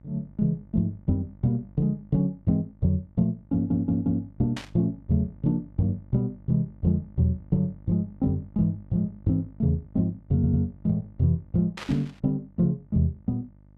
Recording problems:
mains hum; 50 Hz, harmonics up to 900 Hz, SNR 24 dB
audio stuttering; at 3.5 s and at 10 s
burst of static; at 4.5 s and at 12 s; peak -6 dB vs average level

